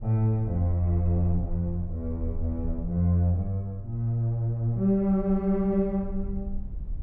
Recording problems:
rumble; below 54 Hz, SNR 13 dB

